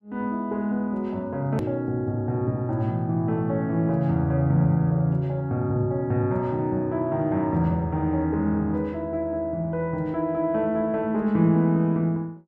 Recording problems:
click at an edit; at 1.5 s

